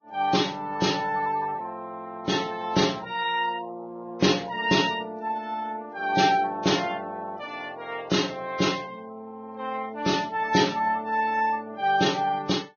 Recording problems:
lossy compression; Vorbis, log-spectral distance 3 dB, nothing above 6.5 kHz

